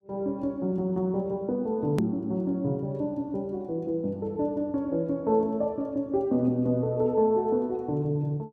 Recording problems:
edit click; at 2 s

